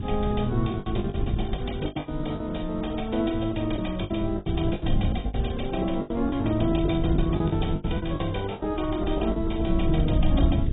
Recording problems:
codec artefacts; AAC, log-spectral distance 8 dB, nothing above 3.7 kHz
background hiss; SNR 27 dB
rumble; below 120 Hz, SNR 3 dB
packet loss; 12% of the sound replaced, filled with the last packet

